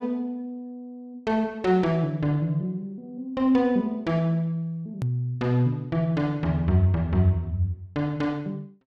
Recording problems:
edit click; at 5 s

